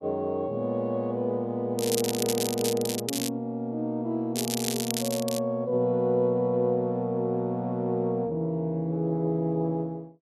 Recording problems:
crackling; from 2 to 3.5 s and from 4.5 to 5.5 s; loose cable, SNR 4 dB

